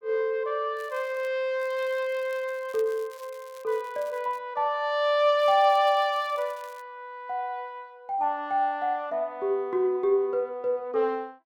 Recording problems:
crackle; at 1 s, from 1.5 to 4.5 s and from 5.5 to 7 s; loose cable, SNR 27 dB

